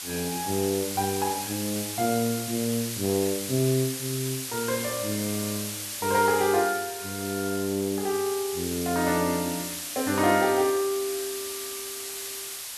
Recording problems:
background hiss; slope +3 dB per octave, SNR 5 dB

